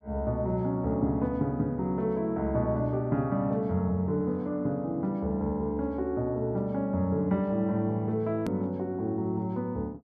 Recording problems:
click at an edit; at 8.5 s

